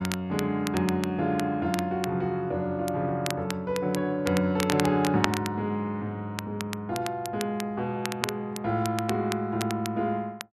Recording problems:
crackling; vinyl, SNR 9 dB

